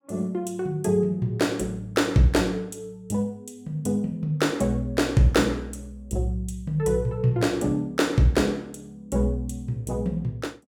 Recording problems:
none

